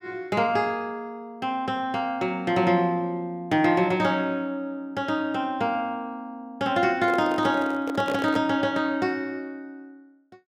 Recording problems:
handling noise; from 7 to 8.5 s; peak -3 dB vs average level

